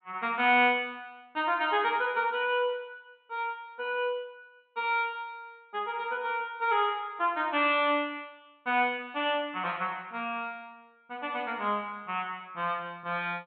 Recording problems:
low-pass filter; nothing above 4 kHz

